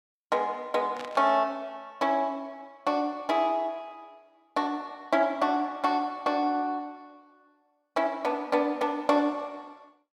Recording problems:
burst of static; at 1 s; peak -9 dB vs average level

